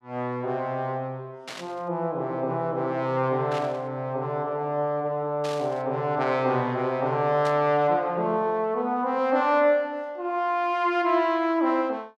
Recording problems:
static burst; 4 times, first at 1.5 s; peak -8 dB vs average level

